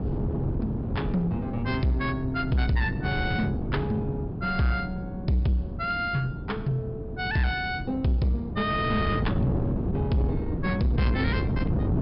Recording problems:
low-pass filter; nothing above 5.5 kHz
distorted audio; soft clipping, signal-to-distortion ratio 12 dB
wind noise; below 260 Hz, SNR 3 dB

